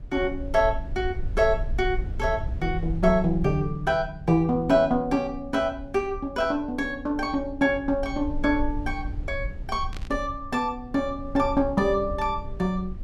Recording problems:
low-frequency rumble; below 68 Hz, SNR 11 dB
burst of static; at 10 s; peak -11 dB vs average level

